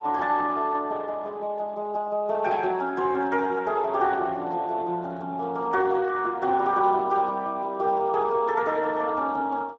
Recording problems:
codec artefacts; Speex, log-spectral distance 3 dB

